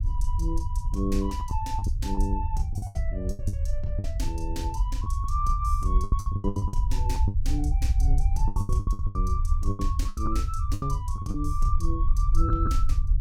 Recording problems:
rumble; below 72 Hz, SNR -5 dB
lost packets; 13% of the sound replaced, filled with the last packet

